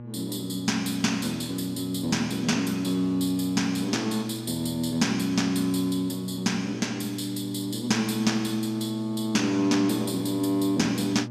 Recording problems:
mains hum; 60 Hz, harmonics up to 840 Hz, SNR 12 dB

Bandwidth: 14.5 kHz